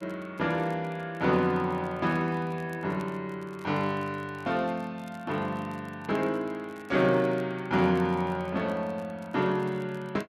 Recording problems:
crackling; vinyl, SNR 30 dB

